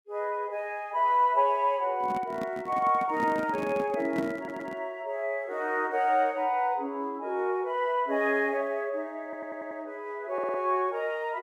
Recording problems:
microphone handling noise; from 2 to 5 s; peak 0 dB vs average level
stutter; at 4.5 s, at 9 s and at 10 s

